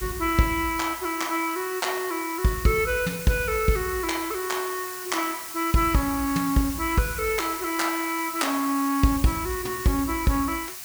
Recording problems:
hiss; SNR 9 dB

